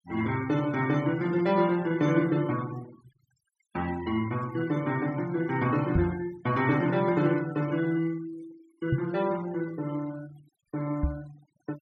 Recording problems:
noise reduction artefacts; signal-to-artefact ratio 20 dB
microphone thump; at 6 s, at 9 s and at 11 s; peak +6 dB vs average level

